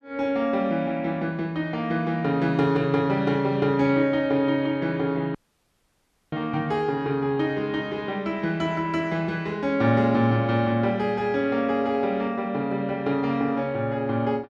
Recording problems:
audio cutting out; at 5.5 s for 1 s

